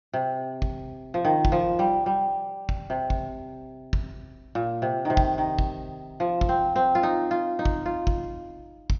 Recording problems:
low-pass filter; nothing above 6.5 kHz

